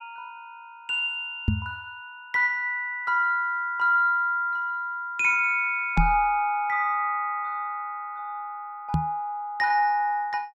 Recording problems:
microphone thump; at 1.5 s, at 6 s and at 9 s; peak +5 dB vs average level

